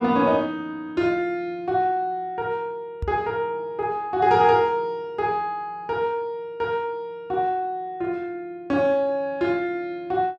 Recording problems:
microphone bump; at 3 s; peak -2 dB vs average level

